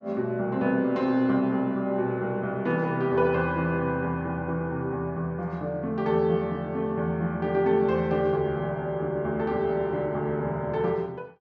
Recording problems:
none

